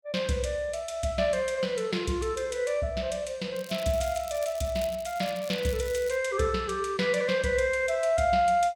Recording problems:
crackle; from 3.5 to 6 s; loose cable, SNR 17 dB

